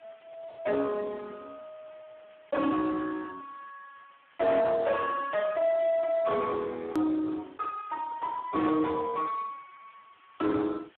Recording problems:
telephone audio; 240 Hz to 3.8 kHz, Speex
distortion; soft clipping, signal-to-distortion ratio 11 dB
hiss; SNR 30 dB
hard cut with a click; at 7 s

